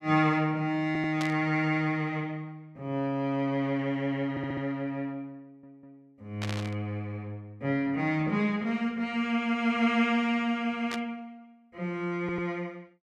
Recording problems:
audio stuttering; 4 times, first at 1 s
burst of static; at 1 s, at 6.5 s and at 11 s; peak -3 dB vs average level

